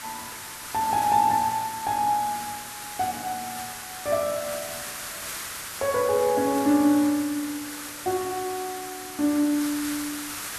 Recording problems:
hiss; SNR 9 dB

